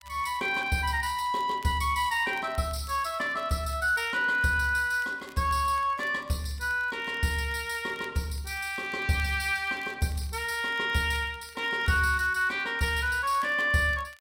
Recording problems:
crackle; vinyl, SNR 27 dB

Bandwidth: 16 kHz